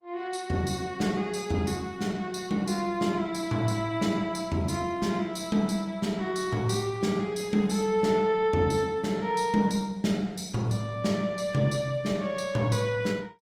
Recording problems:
lossy compression; Opus, log-spectral distance 3 dB, nothing above 19 kHz

